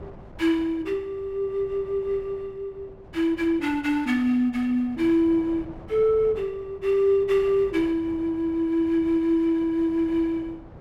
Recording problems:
wind noise; below 500 Hz, SNR 21 dB

